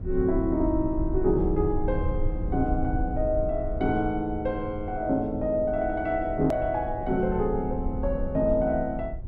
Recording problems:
rumble; below 80 Hz, SNR 7 dB
edit click; at 6.5 s

